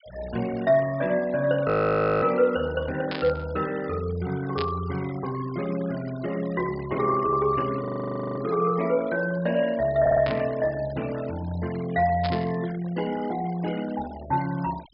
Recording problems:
treble cut off; nothing above 5.5 kHz
denoising artefacts; signal-to-artefact ratio 18 dB
audio freezing; at 1.5 s for 0.5 s and at 8 s for 0.5 s
static burst; 4 times, first at 3 s; peak -3 dB vs average level
stutter; at 10 s

